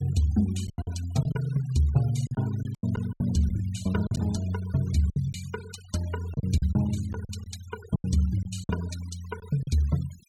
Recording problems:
noise reduction artefacts; signal-to-artefact ratio 19 dB
lost packets; 9% of the sound replaced, filled with silence

